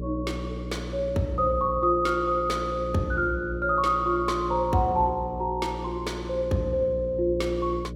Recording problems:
hum; 60 Hz, harmonics up to 600 Hz, SNR 10 dB

